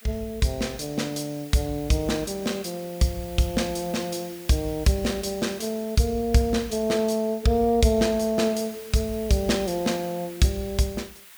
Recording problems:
background hiss; SNR 18 dB

